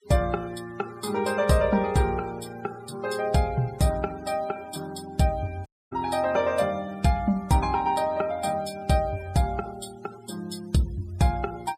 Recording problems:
noise reduction artefacts; signal-to-artefact ratio 21 dB
dropout; at 5.5 s

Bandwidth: 14.5 kHz